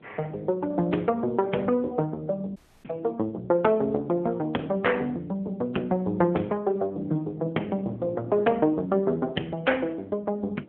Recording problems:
phone line; 260 Hz to 3.4 kHz, AMR-NB
wind noise; below 410 Hz, SNR 21 dB
audio cutting out; at 2.5 s

